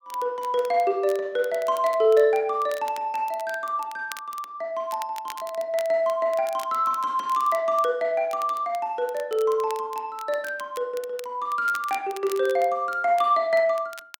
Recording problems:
crackling; vinyl, SNR 21 dB

